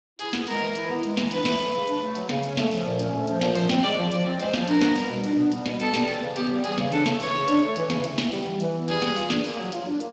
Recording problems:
lossy compression; Speex, log-spectral distance 6 dB

